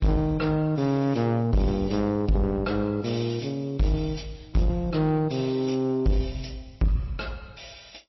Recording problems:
codec artefacts; MP3, log-spectral distance 4 dB, nothing above 5.7 kHz
distorted audio; soft clipping, signal-to-distortion ratio 8 dB

